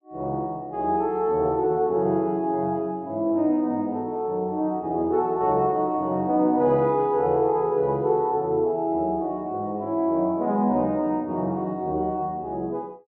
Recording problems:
none

